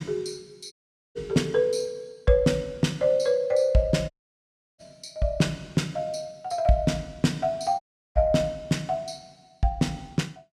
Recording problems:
dropout; at 0.5 s, at 4 s for 0.5 s and at 8 s

